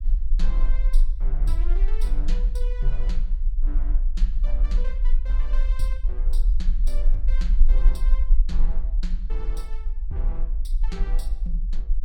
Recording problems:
low-frequency rumble; below 38 Hz, strongest tone 26 Hz, SNR -14 dB

